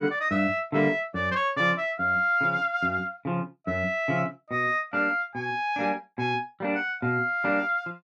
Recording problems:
none

